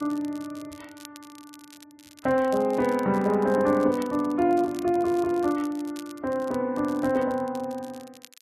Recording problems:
codec artefacts; Vorbis, log-spectral distance 2 dB
crackle; vinyl, SNR 24 dB

